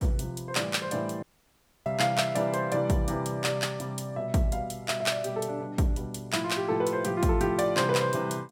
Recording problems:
audio cutting out; at 1 s for 0.5 s

